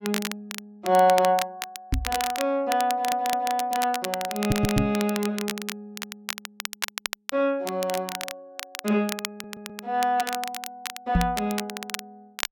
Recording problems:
crackling; vinyl, SNR 8 dB
knock on the microphone; at 2 s, at 4.5 s and at 11 s; peak +6 dB vs average level
audio stuttering; at 3 s, at 4.5 s and at 9.5 s

